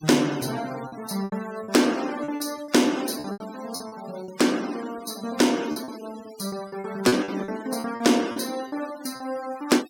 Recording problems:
denoising artefacts; signal-to-artefact ratio 17 dB
packet loss; 11% of the sound replaced, filled with repeated pitch periods

